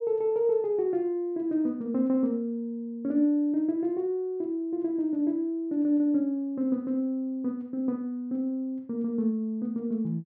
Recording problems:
none

